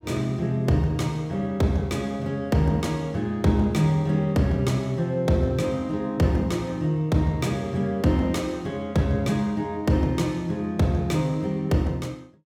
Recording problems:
none

